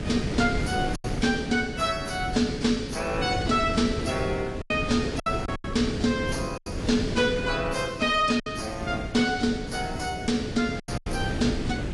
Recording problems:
lossy compression; AAC, log-spectral distance 4 dB, nothing above 11.3 kHz
distortion; soft clipping, signal-to-distortion ratio 9 dB
wind on the microphone; below 380 Hz, SNR 7 dB
packet loss; 5% of the sound replaced, filled with silence

